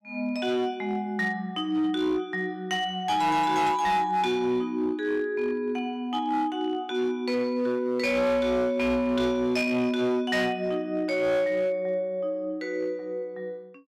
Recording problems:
distorted audio; hard clipping, uneven, signal-to-distortion ratio 11 dB

